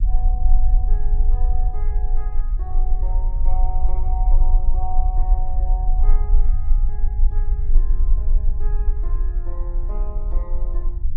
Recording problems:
rumble; below 38 Hz, strongest tone 22 Hz, SNR -16 dB

